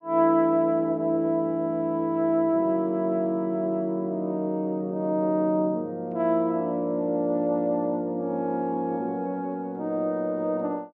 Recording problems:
none

